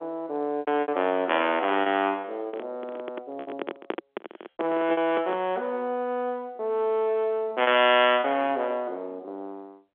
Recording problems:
phone line; 240 Hz to 3.5 kHz, G.711
packet loss; 7% of the sound replaced, filled with repeated pitch periods
handling noise; from 2.5 to 5.5 s; peak 0 dB vs average level

